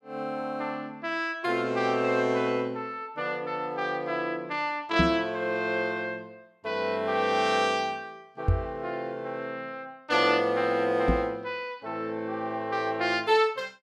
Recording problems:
microphone bump; at 5 s, at 8.5 s and at 11 s; peak +7 dB vs average level

